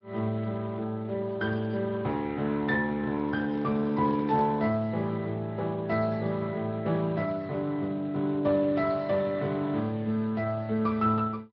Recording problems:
low-pass filter; nothing above 5.5 kHz
lossy compression; Speex, log-spectral distance 2 dB
handling noise; from 3 to 4.5 s; peak -11 dB vs average level

